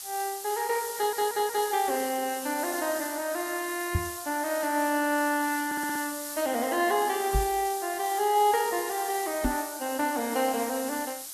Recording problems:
codec artefacts; AAC, then Opus, log-spectral distance 2 dB, nothing above 11.6 kHz
background hiss; SNR 8 dB
stutter; at 1 s and at 5.5 s
microphone thump; at 4 s, at 7.5 s and at 9.5 s; peak +4 dB vs average level

